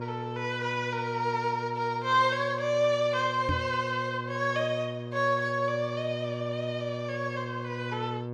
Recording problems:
hum; 60 Hz, harmonics up to 1.2 kHz, SNR 8 dB
knock on the microphone; at 3.5 s; peak +2 dB vs average level

